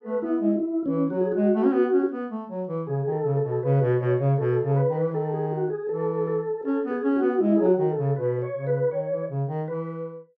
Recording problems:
none

